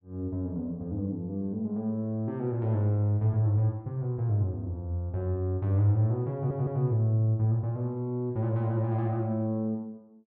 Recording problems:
audio stuttering; at 6.5 s

